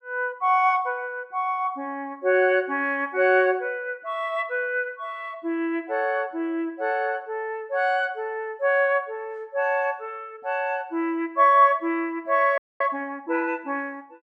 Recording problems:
audio freezing; at 13 s

